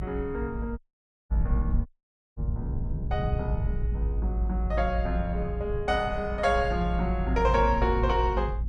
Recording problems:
low-frequency rumble; below 82 Hz, strongest tone 54 Hz, SNR 2 dB
dropout; at 1 s for 0.5 s and at 2 s

